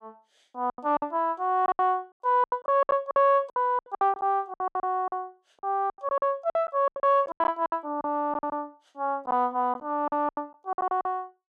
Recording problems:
packet loss; 18% of the sound replaced, filled with silence

